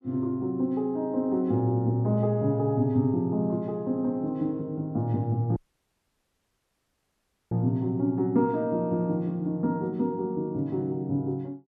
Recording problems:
audio cutting out; at 5.5 s for 2 s

